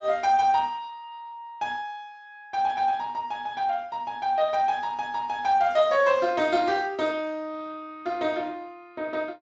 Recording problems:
lossy compression; Speex, log-spectral distance 2 dB, nothing above 7.3 kHz

